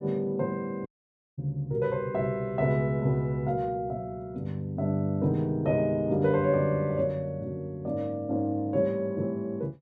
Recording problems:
audio cutting out; at 1 s for 0.5 s

